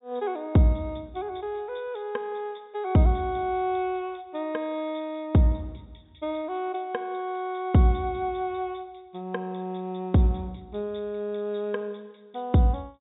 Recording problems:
low-pass filter; nothing above 4 kHz

